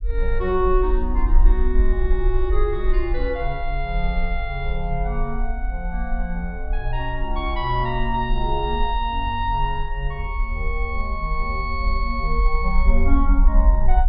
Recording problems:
treble missing; nothing above 5.1 kHz
low-frequency rumble; below 46 Hz, SNR -1 dB

